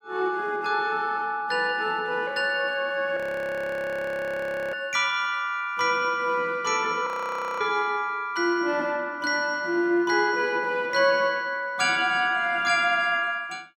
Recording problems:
frozen audio; at 3 s for 1.5 s and at 7 s for 0.5 s

